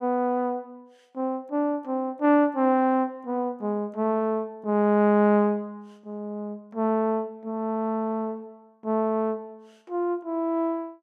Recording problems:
none

